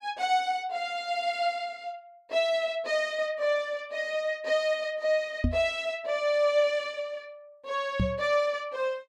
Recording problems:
microphone bump; at 5.5 s and at 8 s; peak +5 dB vs average level

